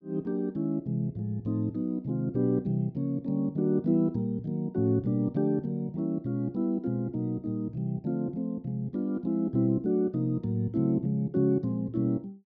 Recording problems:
none

